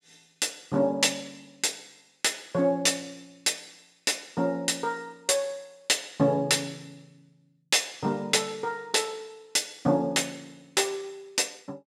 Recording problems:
none

